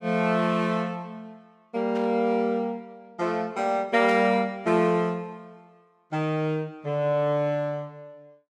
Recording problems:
static burst; at 2 s and at 4 s; peak -14 dB vs average level

